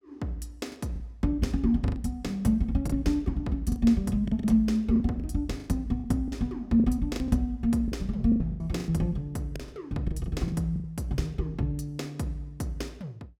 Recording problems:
lost packets; 9% of the sound replaced, filled with the last packet

